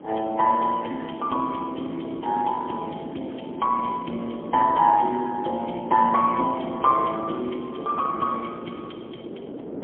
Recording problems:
phone line; 280 Hz to 3.7 kHz, AMR-NB, then MP3
wind noise; below 480 Hz, SNR 13 dB

